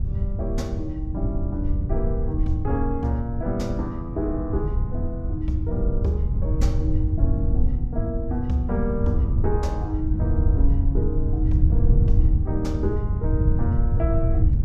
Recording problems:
wind noise; below 96 Hz, SNR -4 dB

